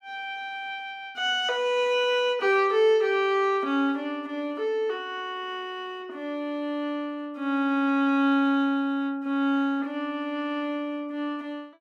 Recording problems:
none

